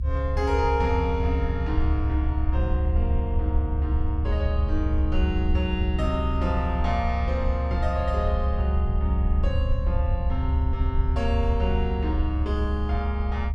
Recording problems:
rumble; below 72 Hz, strongest tone 70 Hz, SNR -3 dB

